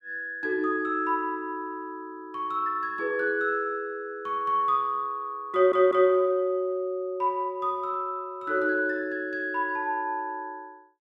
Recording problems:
audio stuttering; at 5.5 s

